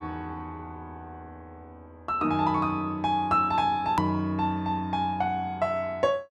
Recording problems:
edit click; at 4 s

